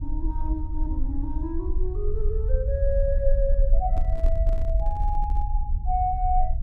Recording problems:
low-frequency rumble; below 52 Hz, SNR -3 dB
microphone handling noise; from 4 to 5.5 s; peak -7 dB vs average level

